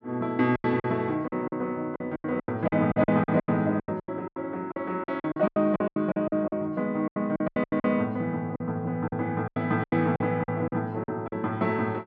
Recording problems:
lost packets; 18% of the sound replaced, filled with silence

